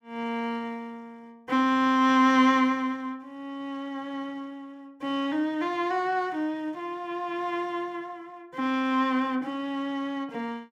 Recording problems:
none

